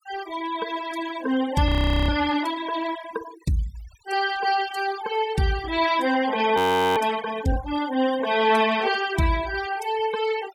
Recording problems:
noise reduction artefacts; signal-to-artefact ratio 15 dB
audio freezing; at 1.5 s and at 6.5 s

